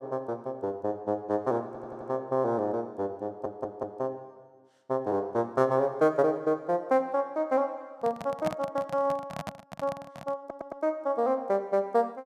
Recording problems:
audio stuttering; at 1.5 s, at 3.5 s and at 10 s
microphone handling noise; from 8 to 10 s; peak 0 dB vs average level

